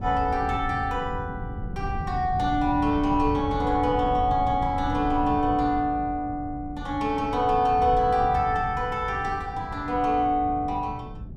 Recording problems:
wind on the microphone; below 150 Hz, SNR 10 dB

